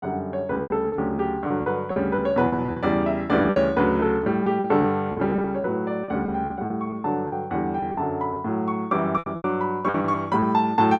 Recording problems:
packet loss; 12% of the sound replaced, filled with repeated pitch periods

